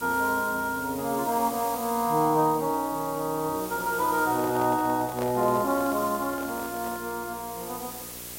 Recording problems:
mains hum; 60 Hz, harmonics up to 1.4 kHz, SNR 22 dB
hiss; slope 0 dB per octave, SNR 12 dB
microphone handling noise; from 4 to 7 s; peak -4 dB vs average level

